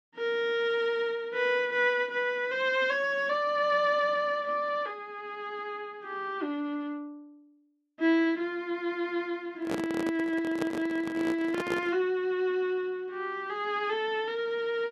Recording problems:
microphone handling noise; from 9.5 to 12 s; peak 0 dB vs average level

